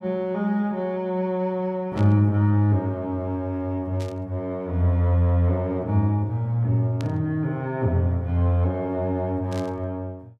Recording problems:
burst of static; 4 times, first at 2 s; peak -12 dB vs average level

